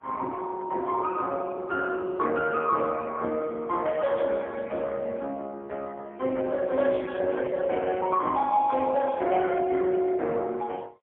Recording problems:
telephone audio; 240 Hz to 3.4 kHz, AMR-NB, then MP3

